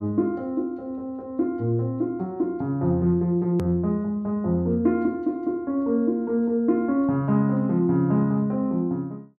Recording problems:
hard cut with a click; at 3.5 s

